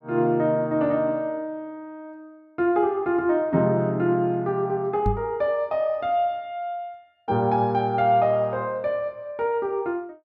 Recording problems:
microphone bump; at 5 s; peak +2 dB vs average level

